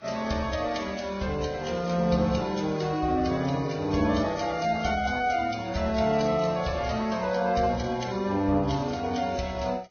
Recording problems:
lossy compression; Vorbis, then AAC, log-spectral distance 4 dB, nothing above 6.3 kHz

